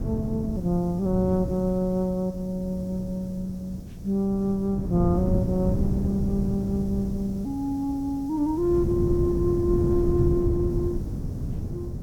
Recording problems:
hum; 60 Hz, harmonics up to 720 Hz, SNR 30 dB
background hiss; SNR 29 dB
wind noise; below 190 Hz, SNR 4 dB

